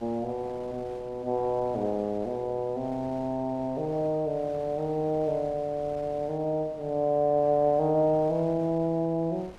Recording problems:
wind noise; below 990 Hz, SNR 21 dB

